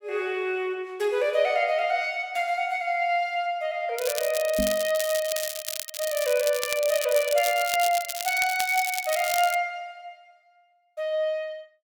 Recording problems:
crackling; from 4 to 9.5 s; loose cable, SNR 7 dB
microphone thump; at 4.5 s; peak -1 dB vs average level

